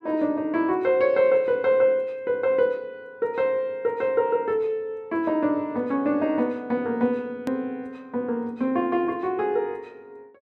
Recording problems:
edit click; at 7.5 s

